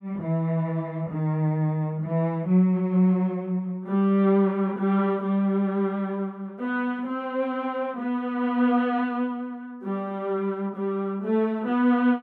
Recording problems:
none

